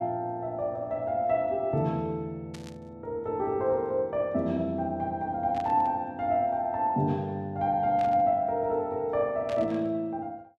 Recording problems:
burst of static; 4 times, first at 2.5 s; peak -11 dB vs average level

